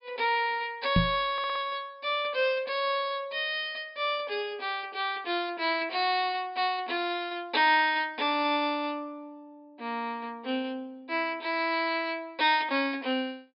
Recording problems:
treble cut off; nothing above 5.5 kHz
microphone thump; at 1 s; peak +7 dB vs average level
audio stuttering; at 1.5 s

